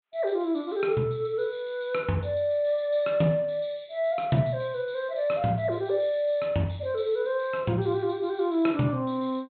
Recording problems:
low-pass filter; nothing above 4 kHz

